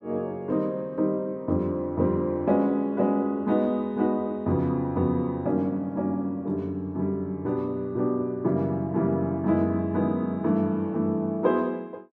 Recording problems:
none

